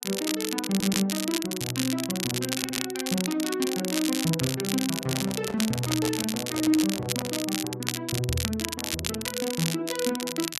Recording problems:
crackle; vinyl, SNR 2 dB
stutter; at 0.5 s and at 2.5 s
microphone handling noise; from 5 to 7.5 s; peak -3 dB vs average level

